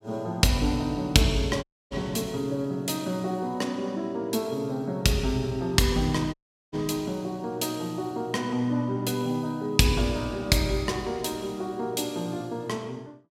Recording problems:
audio cutting out; at 1.5 s and at 6.5 s

